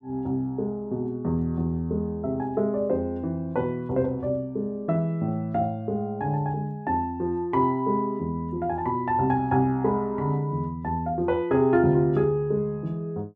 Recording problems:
none

